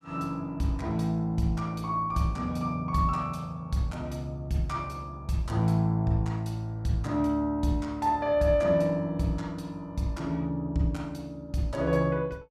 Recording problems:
none

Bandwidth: 15 kHz